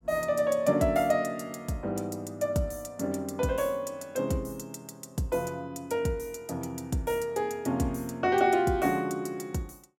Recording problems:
none

